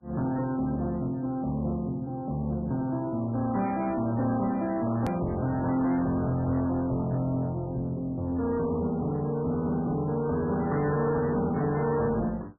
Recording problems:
lossy compression; MP3, log-spectral distance 2 dB, nothing above 13.1 kHz
distorted audio; soft clipping, signal-to-distortion ratio 10 dB
edit click; at 5 s

